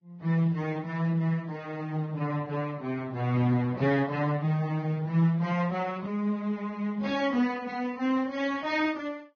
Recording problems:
codec artefacts; Speex, then Vorbis, log-spectral distance 3 dB, nothing above 6.5 kHz

